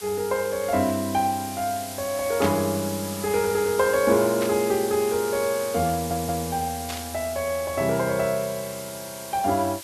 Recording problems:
hiss; slope +1 dB per octave, SNR 10 dB
burst of static; at 2.5 s, at 4.5 s and at 7 s; peak -3 dB vs average level
stutter; at 6 s

